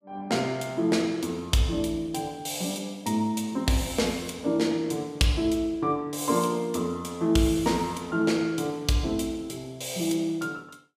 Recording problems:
none

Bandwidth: 15.5 kHz